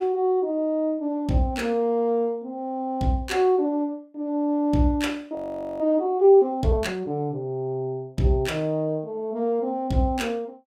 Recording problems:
frozen audio; at 5.5 s

